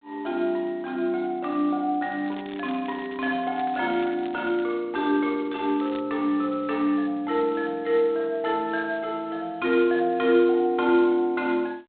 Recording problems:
phone line; 260 Hz to 3.8 kHz, G.726
crackle; from 2.5 to 4.5 s and at 5.5 s; loose cable, SNR 22 dB

